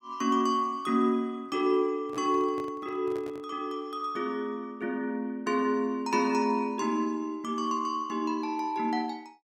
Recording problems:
handling noise; from 2 to 3.5 s; peak -10 dB vs average level

